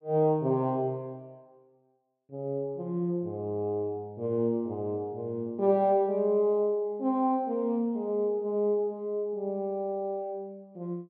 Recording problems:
none

